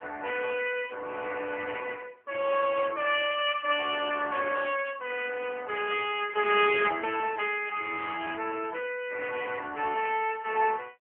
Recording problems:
telephone audio; 280 Hz to 3.3 kHz, AMR-NB

